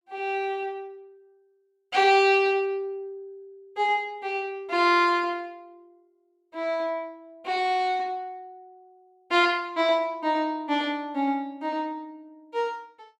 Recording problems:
none

